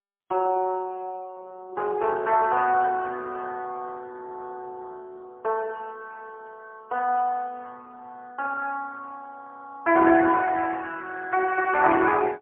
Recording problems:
phone line; 260 Hz to 3.3 kHz, AMR-NB, then MP3

